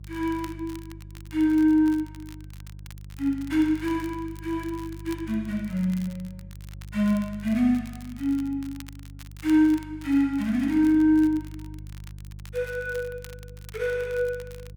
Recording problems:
hum; 50 Hz, harmonics up to 350 Hz, SNR 17 dB
crackle; vinyl, SNR 25 dB

